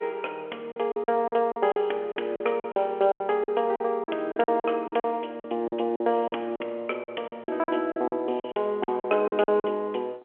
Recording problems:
telephone audio; 300 Hz to 3.3 kHz, G.711
lost packets; 15% of the sound replaced, filled with silence

